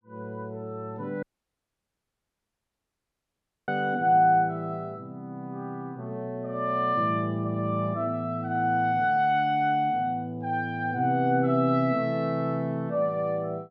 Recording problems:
audio cutting out; at 1 s for 2.5 s

